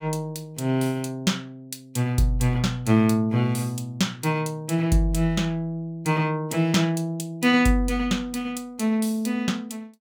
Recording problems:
none

